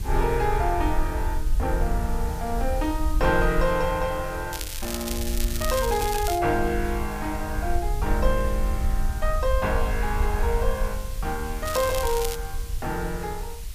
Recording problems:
hiss; slope +1 dB per octave, SNR 15 dB
wind on the microphone; below 60 Hz, SNR 3 dB
crackle; from 4.5 to 6.5 s and at 12 s; loose cable, SNR 6 dB

